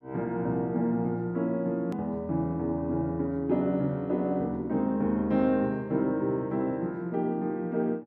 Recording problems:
hard cut with a click; at 2 s

